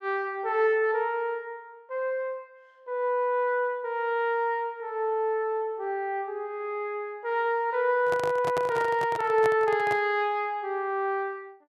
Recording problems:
handling noise; from 8 to 10 s; peak -2 dB vs average level

